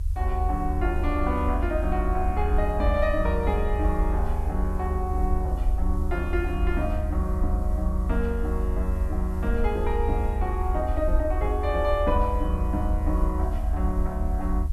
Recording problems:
hiss; SNR 27 dB
low-frequency rumble; below 74 Hz, SNR -1 dB

